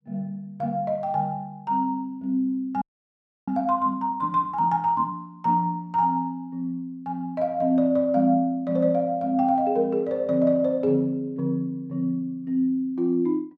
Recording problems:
frozen audio; at 3 s for 0.5 s

